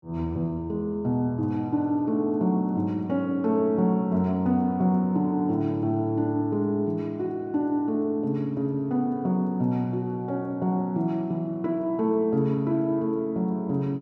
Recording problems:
none

